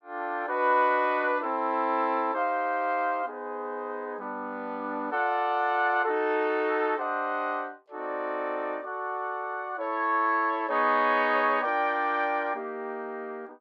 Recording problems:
none

